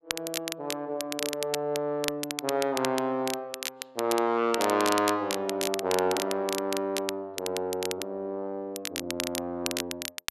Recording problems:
crackle; vinyl, SNR 5 dB

